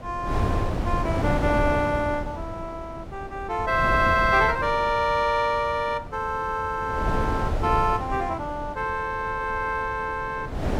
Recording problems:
wind on the microphone; below 430 Hz, SNR 6 dB

